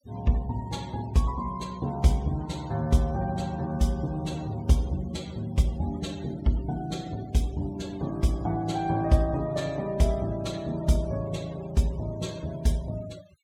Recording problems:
noise reduction artefacts; signal-to-artefact ratio 22 dB

